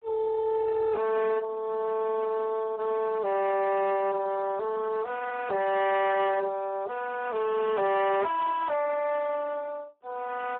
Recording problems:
telephone audio; 340 Hz to 2.2 kHz, Speex
distortion; hard clipping, uneven, signal-to-distortion ratio 8 dB
microphone handling noise; from 7.5 to 9 s; peak -10 dB vs average level

